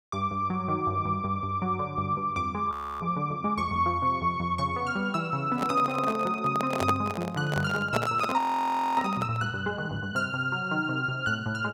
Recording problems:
frozen audio; at 2.5 s and at 8.5 s for 0.5 s
microphone handling noise; from 5.5 to 9.5 s; peak +4 dB vs average level

